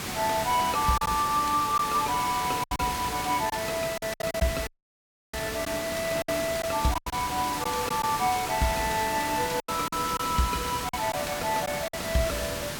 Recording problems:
hiss; slope -2 dB per octave, SNR 5 dB
packet loss; 7% of the sound replaced, filled with silence
dropout; at 4.5 s for 0.5 s

